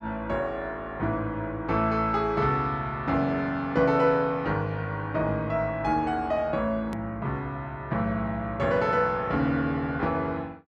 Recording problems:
edit click; at 7 s

